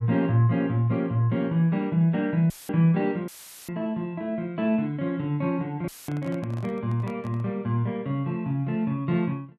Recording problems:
dropout; at 2.5 s, at 3.5 s and at 6 s; filled with static
handling noise; from 6 to 7.5 s; peak -13 dB vs average level

